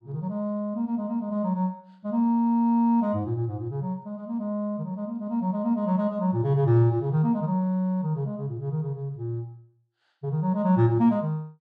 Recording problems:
none

